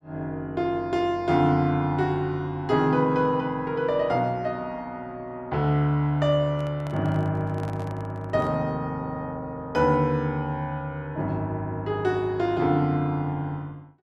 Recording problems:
handling noise; from 6.5 to 8.5 s; peak -11 dB vs average level

